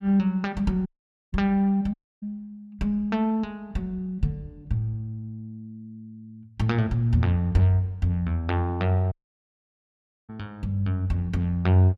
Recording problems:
dropout; at 1 s, at 2 s and at 9 s for 1 s

